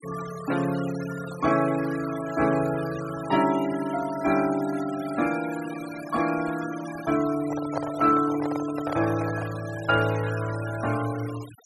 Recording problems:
denoising artefacts; signal-to-artefact ratio 15 dB
microphone handling noise; from 7.5 to 9.5 s; peak +1 dB vs average level

